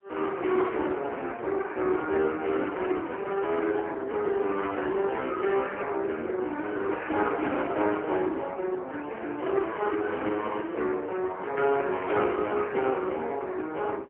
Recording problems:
phone line; 280 Hz to 3.2 kHz, AMR-NB, then MP3

